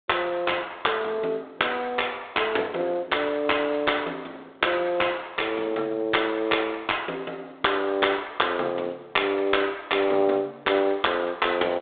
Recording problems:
telephone audio; 260 Hz to 3.7 kHz, G.726

